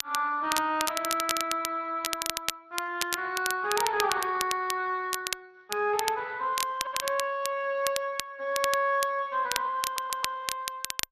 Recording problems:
lossy compression; MP3, then Speex, log-spectral distance 2 dB
crackle; vinyl, SNR 4 dB
audio stuttering; at 7 s and at 10 s

